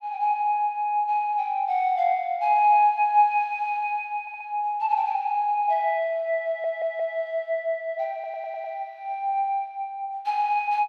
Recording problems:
audio stuttering; at 4 s, at 6.5 s and at 8 s

